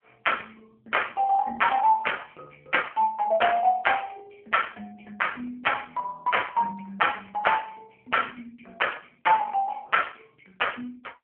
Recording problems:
telephone audio; 260 Hz to 3.2 kHz, AMR-NB

